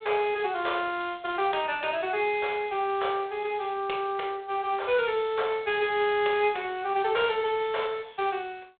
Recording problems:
telephone audio; 340 Hz to 3.7 kHz, G.726

